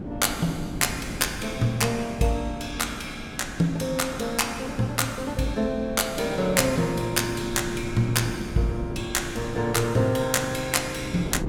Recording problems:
wind noise; below 320 Hz, SNR 11 dB

